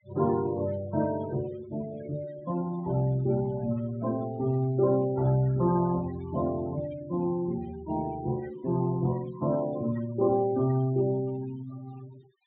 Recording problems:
treble missing; nothing above 4 kHz
noise reduction artefacts; signal-to-artefact ratio 17 dB

